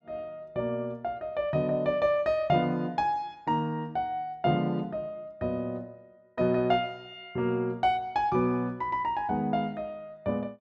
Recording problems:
none

